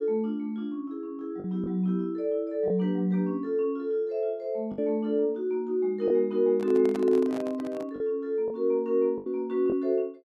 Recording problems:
packet loss; 3% of the sound replaced, filled with the last packet
handling noise; from 6.5 to 8 s; peak -7 dB vs average level

